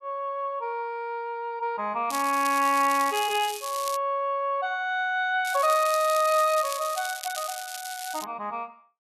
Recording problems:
crackling; from 2 to 4 s and from 5.5 to 8 s; loose cable, SNR 10 dB

